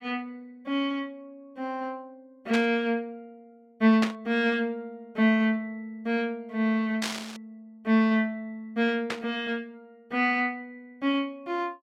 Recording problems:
burst of static; 4 times, first at 2.5 s; peak +1 dB vs average level

